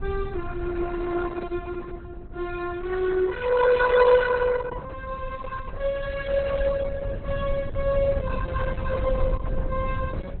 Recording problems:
codec artefacts; Opus, log-spectral distance 3 dB, nothing above 4 kHz
rumble; below 90 Hz, SNR 9 dB

